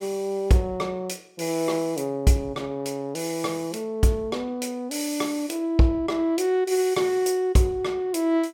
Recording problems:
none

